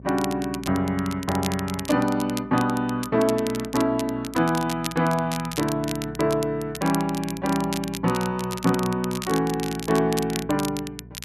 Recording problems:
mains hum; 60 Hz, harmonics up to 660 Hz, SNR 19 dB
crackle; vinyl, SNR 11 dB

